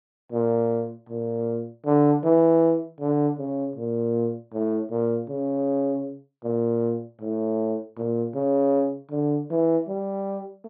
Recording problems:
treble cut off; nothing above 4.5 kHz

